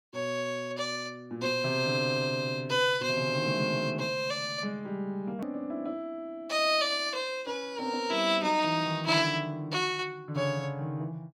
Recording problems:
edit click; at 5.5 s

